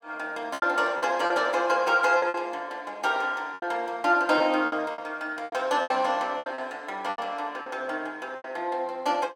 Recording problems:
packet loss; 11% of the sound replaced, filled with repeated pitch periods

